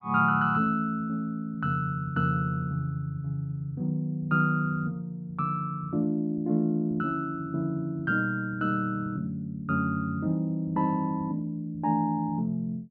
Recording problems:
none

